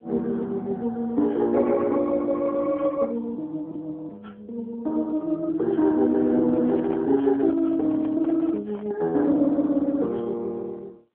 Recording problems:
telephone audio; 190 Hz to 2.2 kHz, AMR-NB
microphone handling noise; from 6.5 to 9 s; peak -8 dB vs average level

